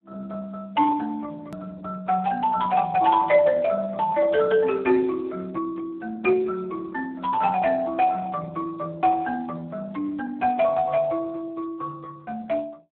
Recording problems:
phone line; 190 Hz to 2.9 kHz, Speex
click at an edit; at 1.5 s

